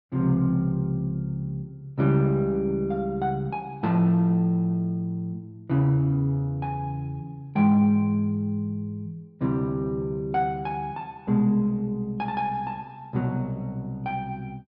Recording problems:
treble missing; nothing above 5.5 kHz

